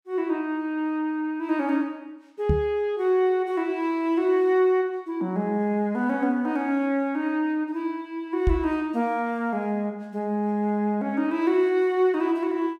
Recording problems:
microphone bump; at 2.5 s and at 8.5 s; peak +5 dB vs average level

